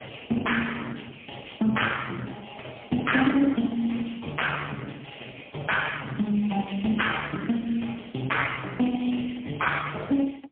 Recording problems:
telephone audio; 170 Hz to 3.4 kHz, AMR-NB, then MP3

